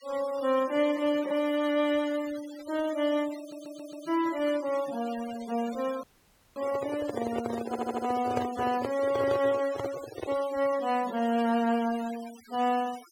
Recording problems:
denoising artefacts; signal-to-artefact ratio 16 dB
audio stuttering; at 3.5 s and at 7.5 s
handling noise; from 6 to 10 s; peak +1 dB vs average level
audio cutting out; at 6 s for 0.5 s

